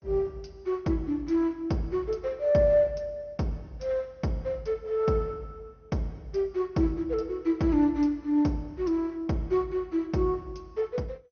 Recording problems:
lossy codec; MP2, log-spectral distance 2 dB, nothing above 6.3 kHz

